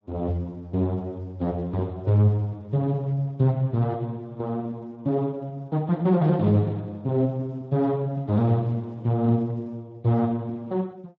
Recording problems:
lossy compression; Speex, log-spectral distance 2 dB

